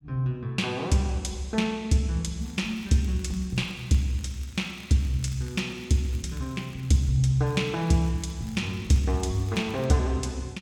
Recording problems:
crackling; from 2.5 to 7 s and from 7.5 to 10 s; loose cable, SNR 26 dB

